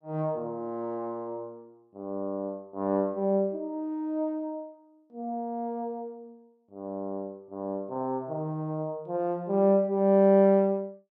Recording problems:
none

